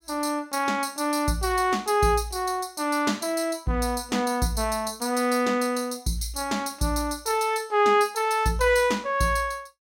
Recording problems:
none

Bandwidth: 16 kHz